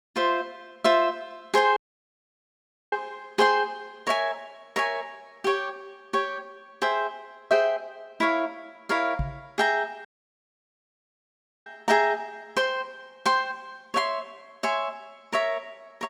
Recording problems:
dropout; at 2 s for 1 s and at 10 s for 1.5 s
microphone thump; at 9 s; peak +1 dB vs average level

